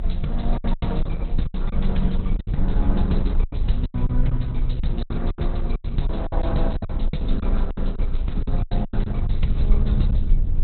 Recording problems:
lossy codec; Opus, log-spectral distance 2 dB, nothing above 4.1 kHz
mains hum; 50 Hz, harmonics up to 600 Hz, SNR 17 dB
rumble; below 48 Hz, strongest tone 26 Hz, SNR -3 dB
wind noise; below 260 Hz, SNR 19 dB
packet loss; 13% of the sound replaced, filled with silence

